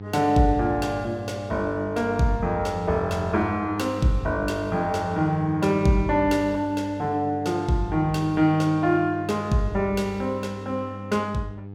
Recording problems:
hum; 50 Hz, harmonics up to 900 Hz, SNR 13 dB

